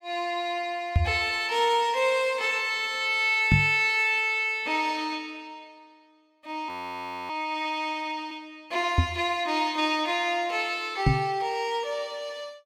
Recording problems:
microphone bump; 4 times, first at 1 s; peak +7 dB vs average level
audio freezing; at 6.5 s for 0.5 s

